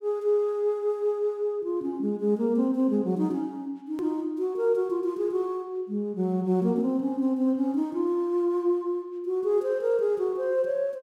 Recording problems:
click at an edit; at 4 s

